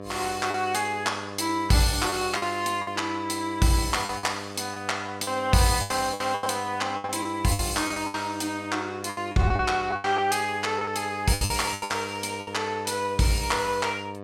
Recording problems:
hum; 50 Hz, harmonics up to 1.9 kHz, SNR 13 dB
packet loss; 10% of the sound replaced, filled with the last packet

